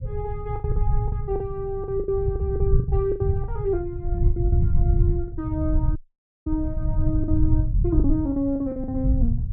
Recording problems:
low-frequency rumble; below 100 Hz, SNR -3 dB
lost packets; 11% of the sound replaced, filled with the last packet
audio cutting out; at 6 s for 0.5 s

